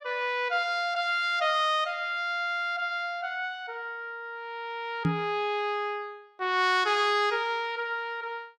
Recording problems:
knock on the microphone; at 5 s; peak +5 dB vs average level

